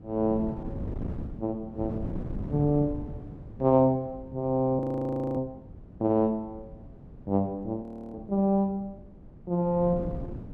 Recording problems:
wind noise; below 250 Hz, SNR 12 dB
frozen audio; at 5 s for 0.5 s and at 8 s

